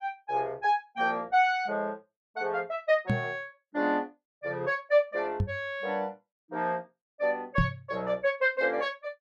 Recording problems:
knock on the microphone; at 3 s, at 5.5 s and at 7.5 s; peak +6 dB vs average level

